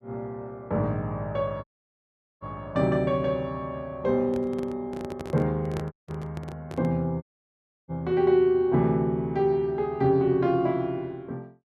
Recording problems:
dropout; at 1.5 s for 1 s, at 6 s and at 7 s for 0.5 s
microphone handling noise; from 4.5 to 7 s; peak -4 dB vs average level

